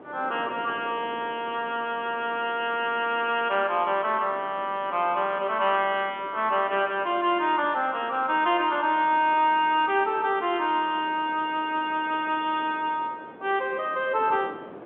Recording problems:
phone line; 280 Hz to 3.5 kHz, G.711
wind noise; below 770 Hz, SNR 19 dB

